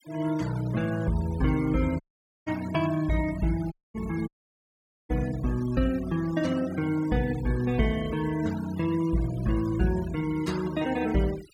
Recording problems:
denoising artefacts; signal-to-artefact ratio 17 dB
audio cutting out; at 2 s, at 3.5 s and at 4.5 s for 1 s

